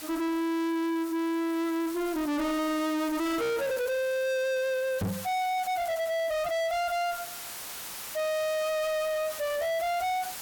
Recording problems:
distortion; soft clipping, signal-to-distortion ratio 6 dB
background hiss; slope 0 dB per octave, SNR 12 dB
knock on the microphone; at 5 s; peak +1 dB vs average level

